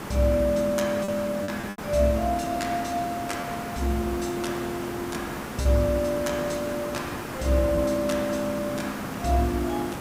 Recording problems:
background hiss; SNR 8 dB
lost packets; 2% of the sound replaced, filled with repeated pitch periods

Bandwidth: 15.5 kHz